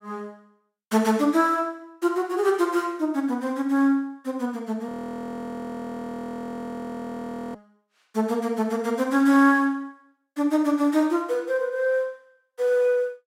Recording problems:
frozen audio; at 5 s for 2.5 s

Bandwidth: 16 kHz